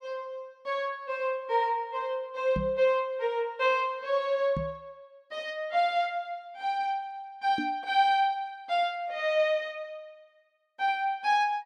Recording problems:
microphone thump; at 2.5 s, at 4.5 s and at 7.5 s; peak 0 dB vs average level

